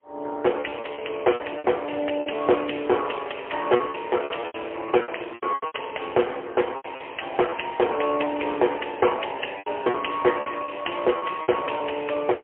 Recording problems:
telephone audio; 280 Hz to 3.2 kHz, AMR-NB, then MP3
packet loss; 12% of the sound replaced, filled with repeated pitch periods

